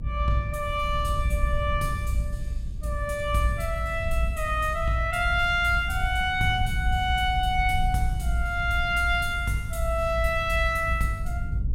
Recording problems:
rumble; below 74 Hz, SNR 4 dB

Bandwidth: 16 kHz